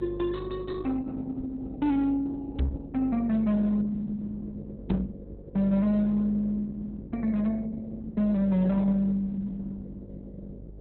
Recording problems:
codec artefacts; Opus, log-spectral distance 2 dB, nothing above 3.8 kHz
distortion; hard clipping, signal-to-distortion ratio 11 dB
electrical hum; 50 Hz, harmonics up to 550 Hz, SNR 15 dB
microphone thump; at 2.5 s and at 5 s; peak +5 dB vs average level

